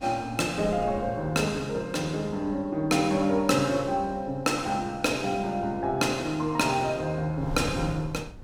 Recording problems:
wind on the microphone; below 190 Hz, SNR 17 dB

